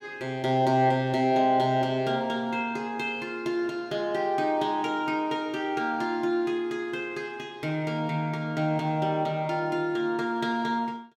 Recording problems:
none

